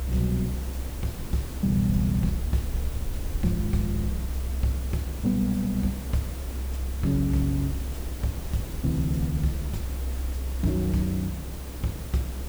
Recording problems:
background hiss; slope -5 dB per octave, SNR 11 dB
rumble; below 66 Hz, strongest tone 64 Hz, SNR 5 dB

